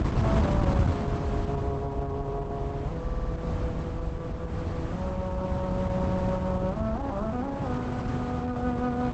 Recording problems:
lossy codec; Opus, log-spectral distance 2 dB
low-frequency rumble; below 92 Hz, SNR 7 dB
wind noise; below 310 Hz, SNR -1 dB
audio stuttering; at 3 s

